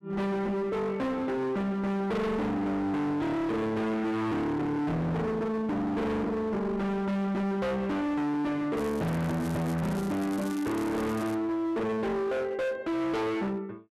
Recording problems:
distortion; hard clipping, signal-to-distortion ratio 6 dB
crackling; from 9 to 11 s; loose cable, SNR 17 dB

